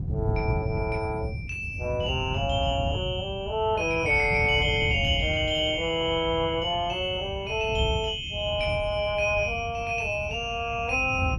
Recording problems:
lossy codec; Opus, log-spectral distance 2 dB, nothing above 14.1 kHz
wind noise; below 140 Hz, SNR 8 dB

